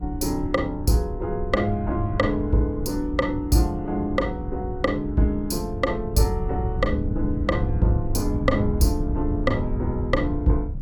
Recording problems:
wind noise; below 110 Hz, SNR 6 dB

